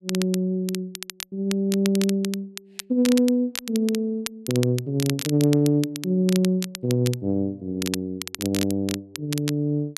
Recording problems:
crackling; vinyl, SNR 10 dB

